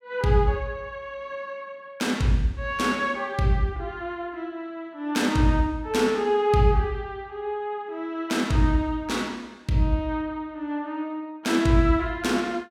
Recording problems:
none

